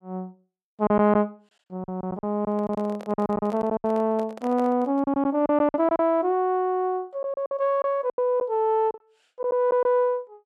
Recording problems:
lost packets; 10% of the sound replaced, filled with silence
handling noise; from 2.5 to 5 s; peak -11 dB vs average level

